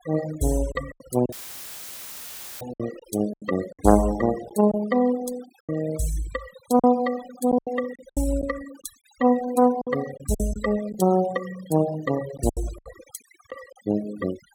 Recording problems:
denoising artefacts; signal-to-artefact ratio 16 dB
packet loss; 9% of the sound replaced, filled with silence
audio cutting out; at 1.5 s for 1.5 s; filled with static

